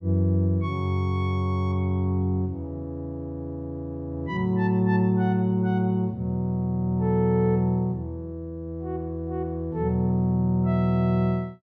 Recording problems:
none

